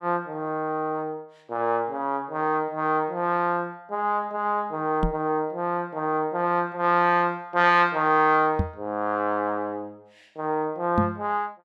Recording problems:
knock on the microphone; at 5 s, at 8.5 s and at 11 s; peak +5 dB vs average level

